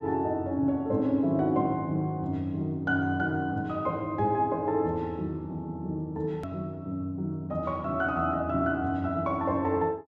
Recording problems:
treble missing; nothing above 7.7 kHz
hard cut with a click; at 6.5 s

